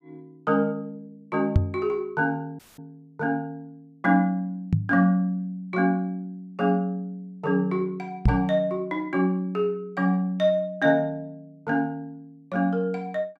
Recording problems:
microphone bump; at 1.5 s, at 4.5 s and at 8.5 s; peak +9 dB vs average level
dropout; at 2.5 s

